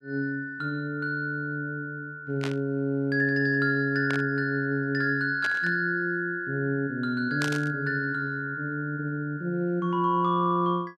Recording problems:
burst of static; 4 times, first at 2.5 s; peak -2 dB vs average level

